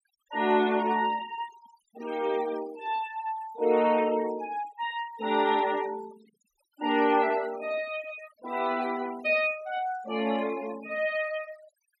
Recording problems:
noise reduction artefacts; signal-to-artefact ratio 18 dB

